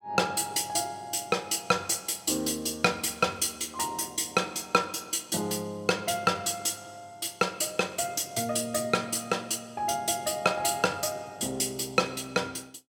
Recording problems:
none

